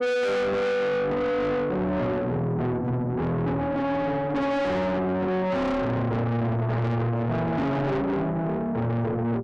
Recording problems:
distorted audio; soft clipping, signal-to-distortion ratio 6 dB

